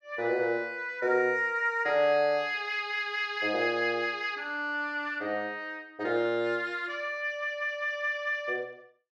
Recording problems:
none

